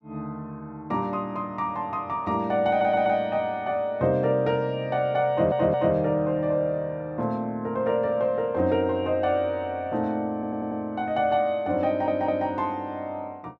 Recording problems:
audio stuttering; 4 times, first at 2.5 s

